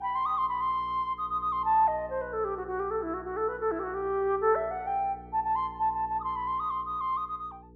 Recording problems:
hum; 60 Hz, harmonics up to 480 Hz, SNR 21 dB

